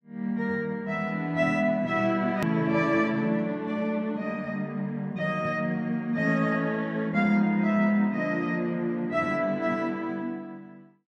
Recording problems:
click at an edit; at 2.5 s

